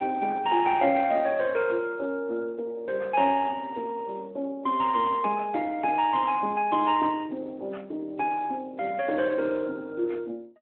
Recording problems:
phone line; 280 Hz to 3.1 kHz, Speex

